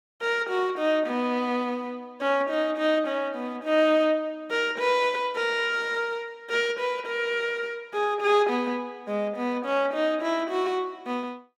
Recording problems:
none

